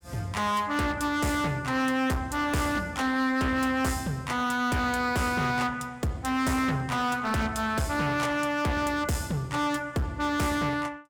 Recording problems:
distorted audio; hard clipping, uneven, signal-to-distortion ratio 7 dB

